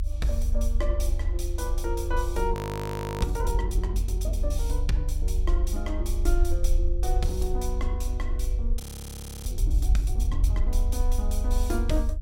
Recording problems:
rumble; below 54 Hz, strongest tone 28 Hz, SNR -5 dB
frozen audio; at 2.5 s for 0.5 s and at 9 s for 0.5 s

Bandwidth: 16.5 kHz